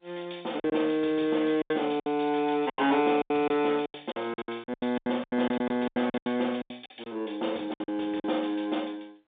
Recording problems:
phone line; 190 Hz to 3.7 kHz, G.711
packet loss; 16% of the sound replaced, filled with silence

